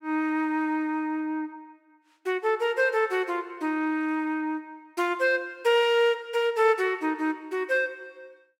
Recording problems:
none

